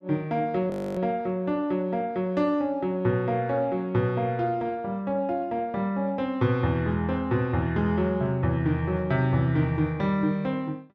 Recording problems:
audio freezing; at 0.5 s

